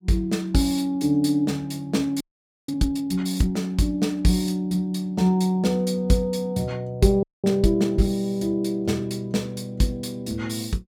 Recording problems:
frozen audio; at 2 s and at 7 s

